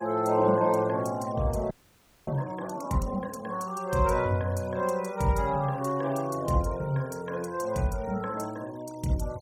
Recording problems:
noise reduction artefacts; signal-to-artefact ratio 23 dB
audio freezing; at 1.5 s for 0.5 s

